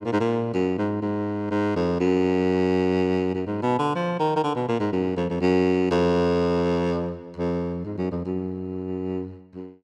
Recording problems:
none

